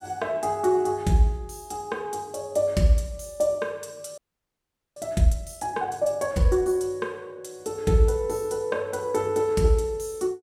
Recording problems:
audio freezing; at 4 s for 1 s

